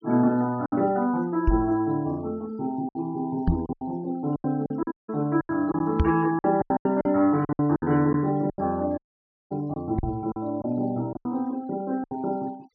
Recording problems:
treble cut off; nothing above 6.1 kHz
noise reduction artefacts; signal-to-artefact ratio 27 dB
packet loss; 11% of the sound replaced, filled with silence
knock on the microphone; 4 times, first at 1.5 s; peak +7 dB vs average level
dropout; at 5 s and at 9 s for 0.5 s

